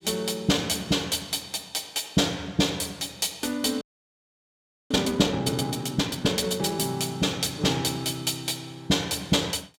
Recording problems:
frozen audio; at 4 s for 1 s

